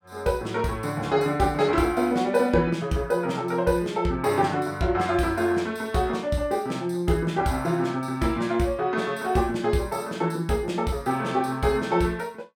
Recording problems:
none

